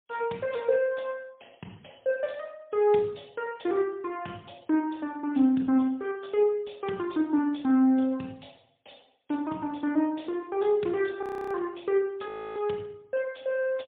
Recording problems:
phone line; 150 Hz to 3.6 kHz, AMR-NB, then MP3
frozen audio; at 11 s and at 12 s

